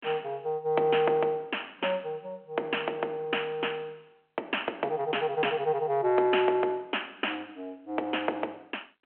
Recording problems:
telephone audio; 280 Hz to 3.2 kHz, G.726

